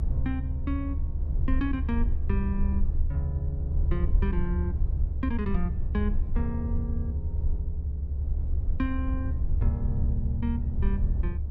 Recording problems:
rumble; below 72 Hz, SNR -4 dB

